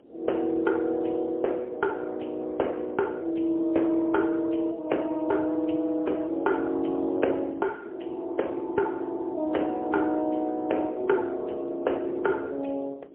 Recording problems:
phone line; 280 Hz to 3.2 kHz, AMR-NB, then MP3
wind noise; below 480 Hz, SNR 21 dB

